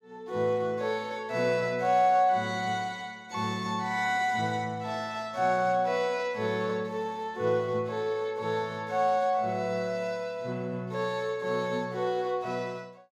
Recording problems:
none

